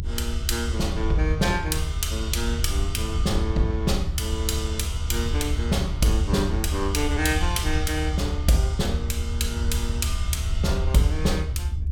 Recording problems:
rumble; below 76 Hz, SNR 1 dB

